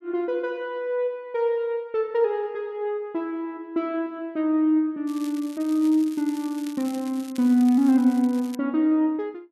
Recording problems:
crackling; from 5 to 8.5 s; loose cable, SNR 21 dB

